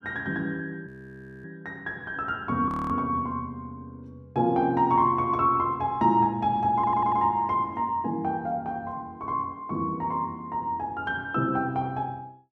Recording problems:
frozen audio; at 1 s for 0.5 s and at 2.5 s
stutter; at 7 s

